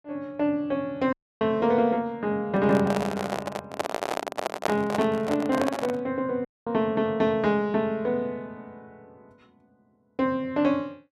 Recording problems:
audio cutting out; at 1 s and at 6.5 s
microphone handling noise; from 2.5 to 6 s; peak +4 dB vs average level

